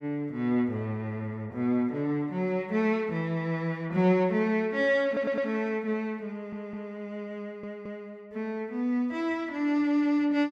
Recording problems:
audio stuttering; at 5 s, at 6.5 s and at 7.5 s

